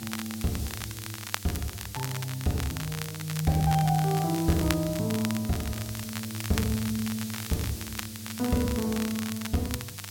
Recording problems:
hum; 50 Hz, harmonics up to 900 Hz, SNR 16 dB
hiss; slope +5 dB per octave, SNR 11 dB
crackling; vinyl, SNR 9 dB

